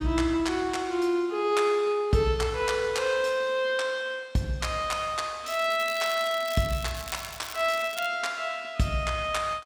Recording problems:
crackle; from 5.5 to 8 s; loose cable, SNR 14 dB

